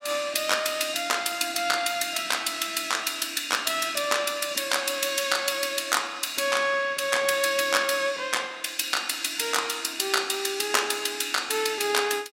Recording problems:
none

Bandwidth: 16 kHz